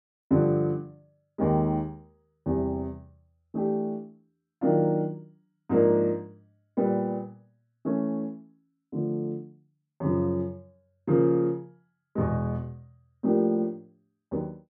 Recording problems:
none

